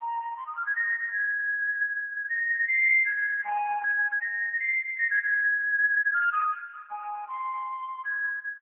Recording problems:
phone line; 970 Hz to 2.1 kHz, AMR-NB

